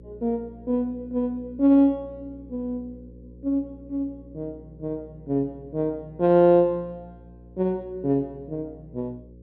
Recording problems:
electrical hum; 60 Hz, harmonics up to 540 Hz, SNR 22 dB

